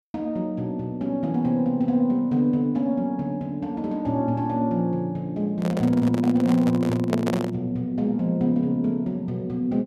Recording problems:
handling noise; from 5.5 to 7.5 s; peak +1 dB vs average level

